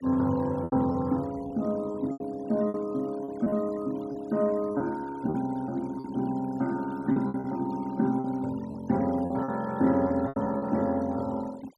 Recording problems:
denoising artefacts; signal-to-artefact ratio 21 dB
lost packets; 8% of the sound replaced, filled with repeated pitch periods

